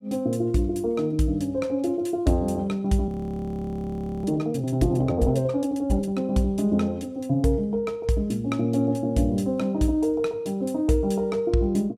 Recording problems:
audio freezing; at 3 s for 1 s

